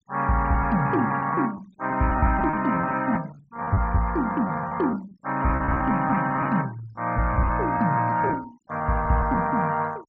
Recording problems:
low-pass filter; nothing above 8 kHz
denoising artefacts; signal-to-artefact ratio 25 dB
lost packets; 10% of the sound replaced, filled with repeated pitch periods

